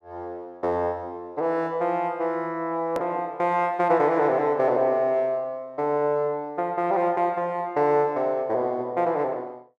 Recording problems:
edit click; at 3 s

